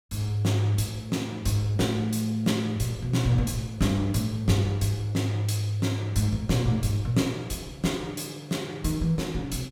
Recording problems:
none

